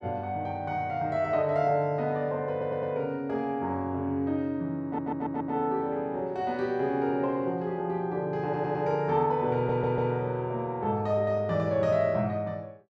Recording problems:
audio stuttering; 4 times, first at 2.5 s

